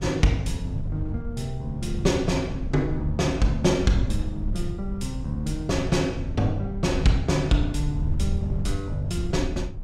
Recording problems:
wind on the microphone; below 96 Hz, SNR 6 dB

